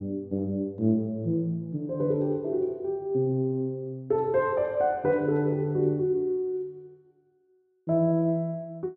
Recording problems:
none

